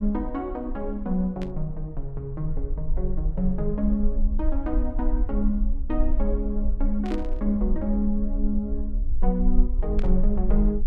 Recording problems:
low-frequency rumble; below 40 Hz, strongest tone 18 Hz, SNR 1 dB
static burst; at 1.5 s, at 7 s and at 10 s; peak -9 dB vs average level

